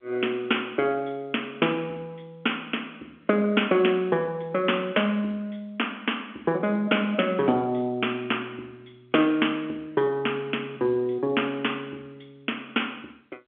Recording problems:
telephone audio; 240 Hz to 3.4 kHz, G.711

